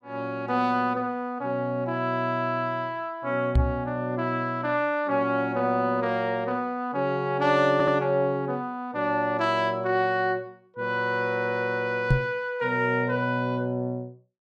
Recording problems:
microphone thump; at 3.5 s and at 12 s; peak +7 dB vs average level
audio stuttering; at 7.5 s

